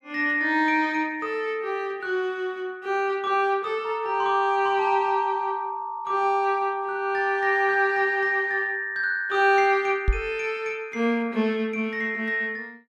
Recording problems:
knock on the microphone; at 10 s; peak +4 dB vs average level

